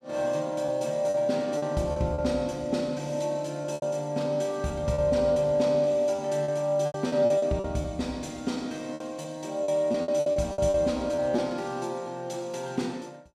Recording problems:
lost packets; 8% of the sound replaced, filled with repeated pitch periods

